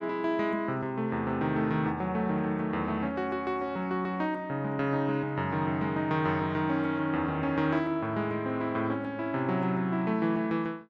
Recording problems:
none

